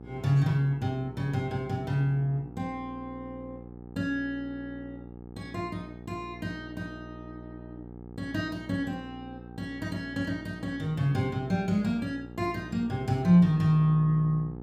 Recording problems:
electrical hum; 60 Hz, harmonics up to 1.2 kHz, SNR 15 dB

